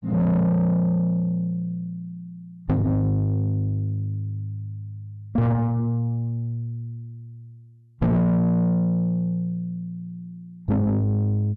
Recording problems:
distortion; soft clipping, signal-to-distortion ratio 8 dB

